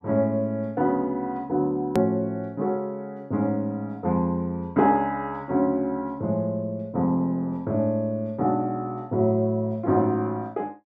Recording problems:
edit click; at 2 s

